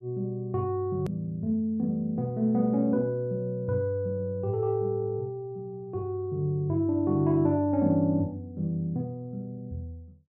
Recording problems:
click at an edit; at 1 s

